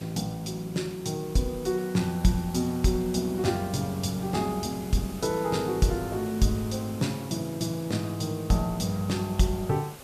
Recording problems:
background hiss; slope -4 dB per octave, SNR 16 dB

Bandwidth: 14.5 kHz